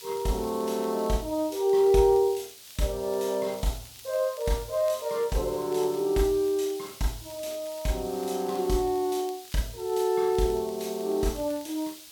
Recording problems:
hiss; SNR 17 dB
crackling; vinyl, SNR 28 dB

